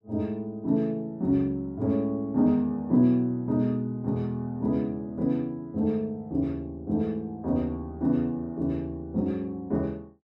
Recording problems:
none

